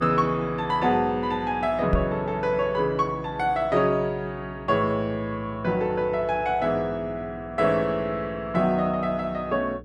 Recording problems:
electrical hum; 60 Hz, harmonics up to 480 Hz, SNR 20 dB
microphone thump; at 2 s; peak +4 dB vs average level

